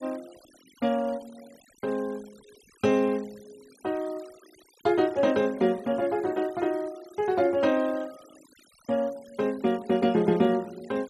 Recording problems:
noise reduction artefacts; signal-to-artefact ratio 24 dB

